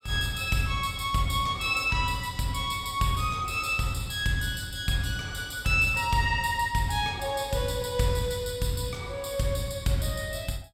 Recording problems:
none

